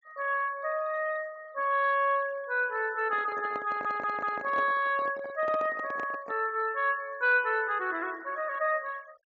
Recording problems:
low-pass filter; nothing above 7.4 kHz
denoising artefacts; signal-to-artefact ratio 23 dB
microphone handling noise; from 3 to 6.5 s; peak -7 dB vs average level
stutter; at 3.5 s

